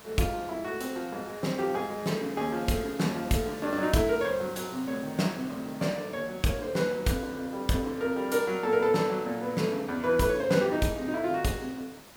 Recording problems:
hiss; slope -3 dB per octave, SNR 19 dB

